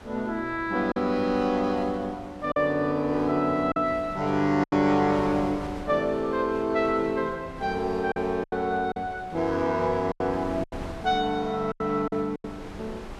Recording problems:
wind noise; below 960 Hz, SNR 17 dB
packet loss; 6% of the sound replaced, filled with silence

